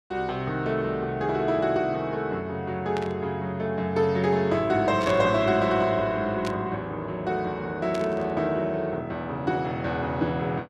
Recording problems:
burst of static; 4 times, first at 3 s; peak -6 dB vs average level

